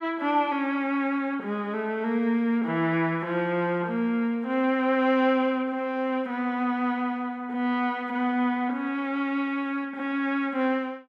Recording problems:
none

